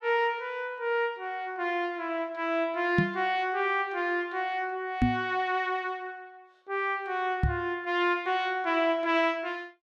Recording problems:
knock on the microphone; at 3 s, at 5 s and at 7.5 s; peak +8 dB vs average level

